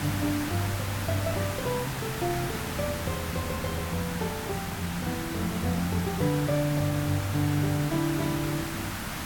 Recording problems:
background hiss; SNR 4 dB

